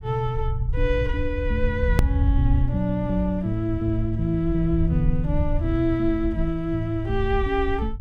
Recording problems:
low-frequency rumble; below 82 Hz, SNR 3 dB
edit click; at 2 s

